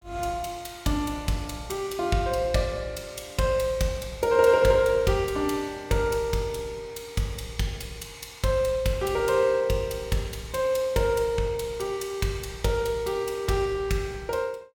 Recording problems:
none

